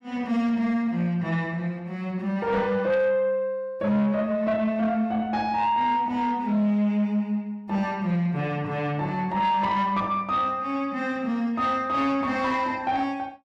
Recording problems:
distortion; soft clipping, signal-to-distortion ratio 12 dB

